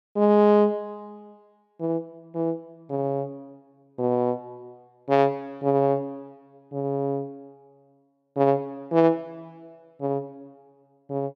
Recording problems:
none

